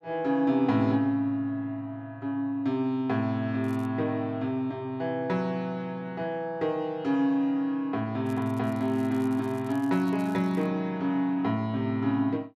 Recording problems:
crackling; at 3.5 s and from 8.5 to 11 s; loose cable, SNR 28 dB

